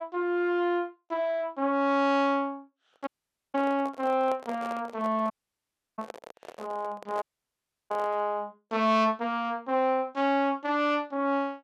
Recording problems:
handling noise; from 3 to 8.5 s; peak -8 dB vs average level
audio cutting out; at 3 s, at 5.5 s for 0.5 s and at 7 s for 0.5 s

